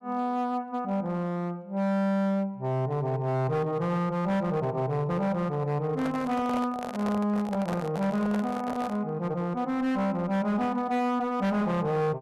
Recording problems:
distorted audio; hard clipping, signal-to-distortion ratio 10 dB
microphone handling noise; from 6 to 9 s; peak -2 dB vs average level

